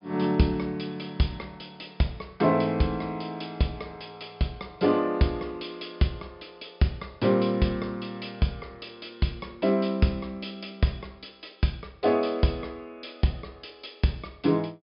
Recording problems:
treble cut off; nothing above 5.5 kHz

